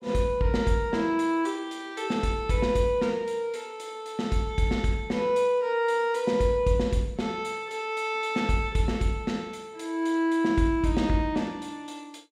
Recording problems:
none

